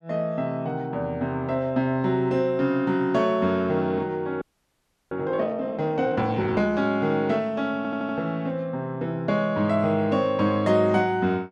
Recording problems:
audio freezing; at 4.5 s for 0.5 s
stutter; at 8 s

